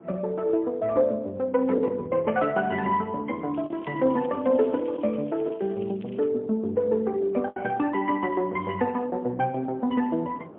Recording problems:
phone line; 150 Hz to 3.5 kHz, AMR-NB, then MP3
wind on the microphone; below 580 Hz, SNR 21 dB
lost packets; 2% of the sound replaced, filled with the last packet
crackle; from 3.5 to 6.5 s; loose cable, SNR 27 dB

